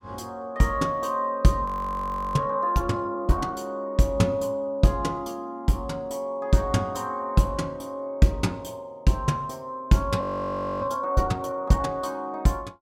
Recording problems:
audio freezing; at 1.5 s for 0.5 s and at 10 s for 0.5 s

